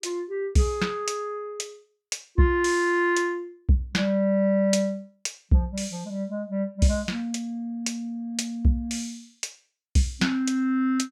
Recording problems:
none

